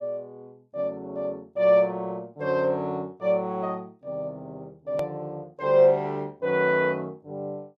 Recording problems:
edit click; at 5 s

